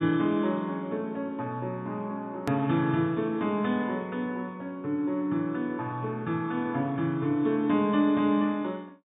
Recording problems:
treble cut off; nothing above 4 kHz
click at an edit; at 2.5 s

